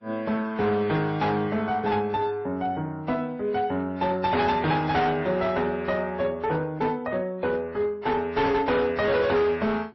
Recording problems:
lossy compression; MP3, then AAC, log-spectral distance 2 dB, nothing above 5.7 kHz
distortion; hard clipping, signal-to-distortion ratio 11 dB

